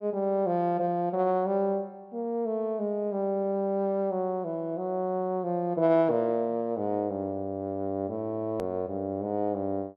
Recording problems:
edit click; at 8.5 s

